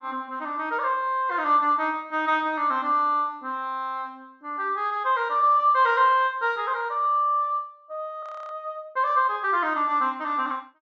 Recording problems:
low-pass filter; nothing above 8 kHz
frozen audio; at 8 s

